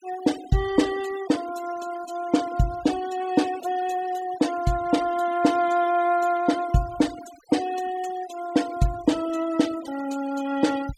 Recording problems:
noise reduction artefacts; signal-to-artefact ratio 17 dB

